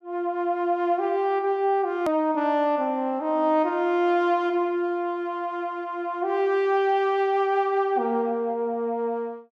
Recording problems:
hard cut with a click; at 2 s

